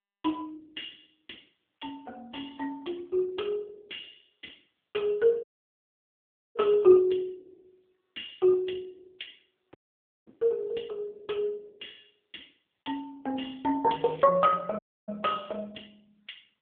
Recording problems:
phone line; 320 Hz to 3.5 kHz, AMR-NB
audio cutting out; at 5.5 s for 1 s, at 10 s for 0.5 s and at 15 s
crackling; at 14 s; loose cable, SNR 23 dB

